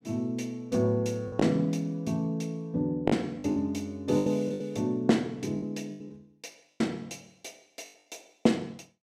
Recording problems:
lost packets; 7% of the sound replaced, filled with the last packet

